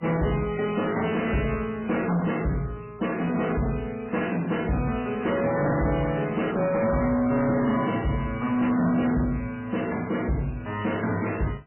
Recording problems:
codec artefacts; MP3, log-spectral distance 8 dB, nothing above 2.9 kHz
distortion; soft clipping, signal-to-distortion ratio 11 dB

